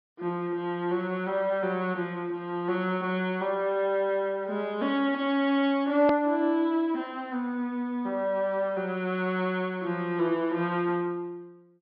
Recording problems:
treble cut off; nothing above 5.5 kHz
edit click; at 6 s

